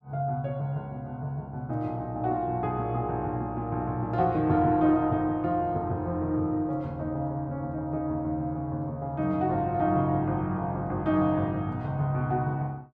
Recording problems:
none

